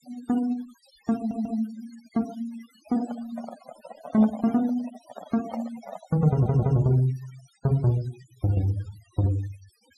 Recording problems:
noise reduction artefacts; signal-to-artefact ratio 18 dB
stutter; at 1 s and at 6.5 s
microphone handling noise; from 3 to 6 s; peak -4 dB vs average level

